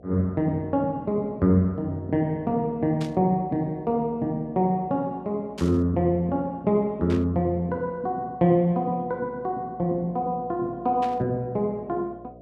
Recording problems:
hum; 60 Hz, harmonics up to 720 Hz, SNR 23 dB
static burst; 4 times, first at 3 s; peak -10 dB vs average level

